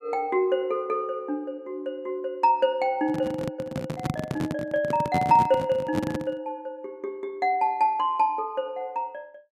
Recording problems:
handling noise; from 3 to 6.5 s; peak +2 dB vs average level

